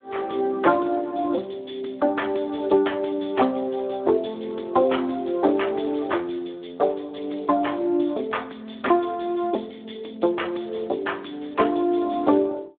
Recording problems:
telephone audio; 260 Hz to 3.5 kHz, Speex

